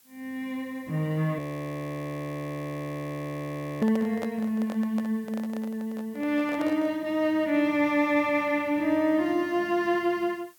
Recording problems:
hiss; slope +1 dB per octave, SNR 29 dB
frozen audio; at 1.5 s for 2.5 s
microphone handling noise; from 4 to 7 s; peak -5 dB vs average level

